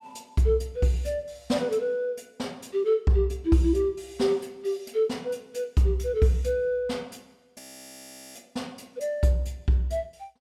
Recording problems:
frozen audio; at 7.5 s for 1 s

